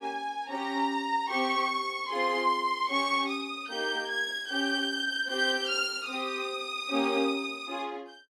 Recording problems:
none

